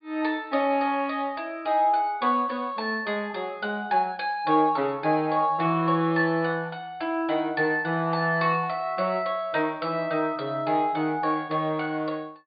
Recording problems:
treble missing; nothing above 4.8 kHz

